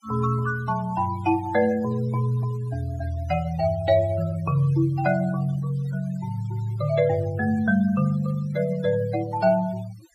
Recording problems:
noise reduction artefacts; signal-to-artefact ratio 20 dB

